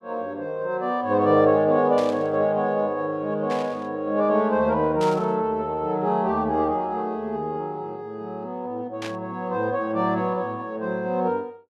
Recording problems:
burst of static; 4 times, first at 2 s; peak -7 dB vs average level

